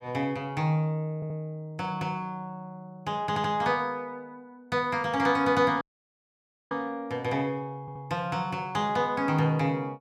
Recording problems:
stutter; at 1 s, at 3.5 s and at 8 s
audio cutting out; at 6 s for 1 s

